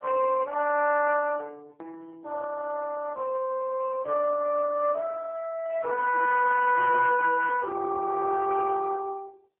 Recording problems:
telephone audio; 340 Hz to 2.9 kHz, AMR-NB

